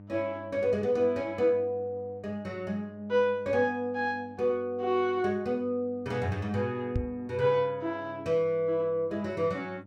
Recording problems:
hum; 50 Hz, harmonics up to 900 Hz, SNR 20 dB
microphone thump; at 7 s; peak +3 dB vs average level

